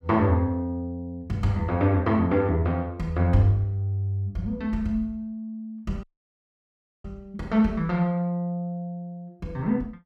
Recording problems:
dropout; at 6 s for 1 s

